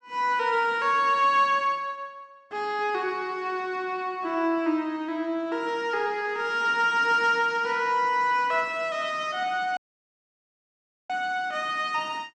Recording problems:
dropout; at 10 s for 1.5 s

